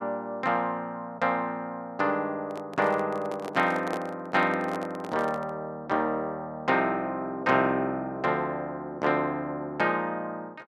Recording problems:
handling noise; from 2.5 to 5.5 s; peak -2 dB vs average level

